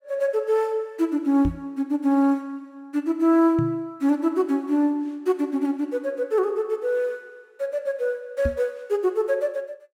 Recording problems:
microphone thump; at 1.5 s, at 3.5 s and at 8.5 s; peak +1 dB vs average level

